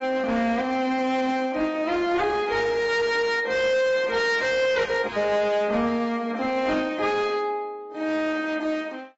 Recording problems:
codec artefacts; AAC, then AAC, log-spectral distance 3 dB, nothing above 7.6 kHz
distorted audio; hard clipping, signal-to-distortion ratio 11 dB

